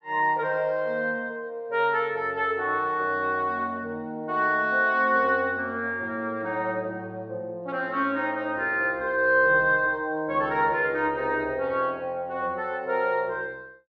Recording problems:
none

